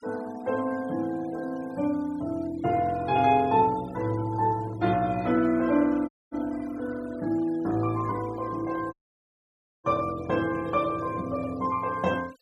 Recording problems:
denoising artefacts; signal-to-artefact ratio 22 dB
dropout; at 6 s and at 9 s for 1 s

